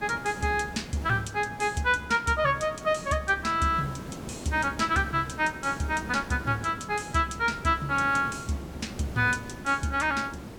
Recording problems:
background hiss; slope -7 dB per octave, SNR 14 dB

